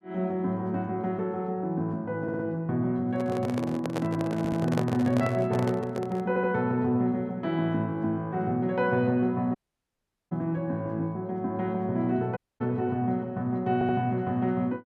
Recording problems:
stutter; 4 times, first at 2 s
handling noise; from 3 to 6.5 s; peak +2 dB vs average level
dropout; at 9.5 s for 1 s and at 12 s

